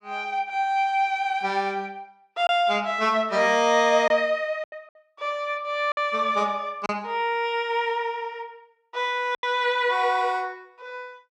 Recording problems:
packet loss; 3% of the sound replaced, filled with silence

